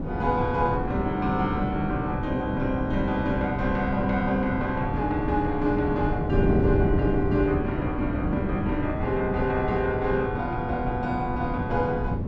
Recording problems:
wind on the microphone; below 260 Hz, SNR 3 dB

